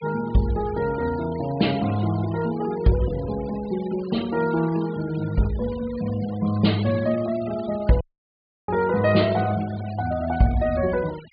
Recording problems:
low-pass filter; nothing above 4.8 kHz
denoising artefacts; signal-to-artefact ratio 18 dB
dropout; at 8 s for 0.5 s

